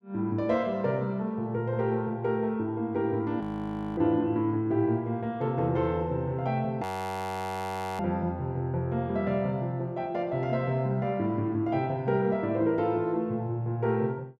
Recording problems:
frozen audio; at 3.5 s for 0.5 s and at 7 s for 1 s

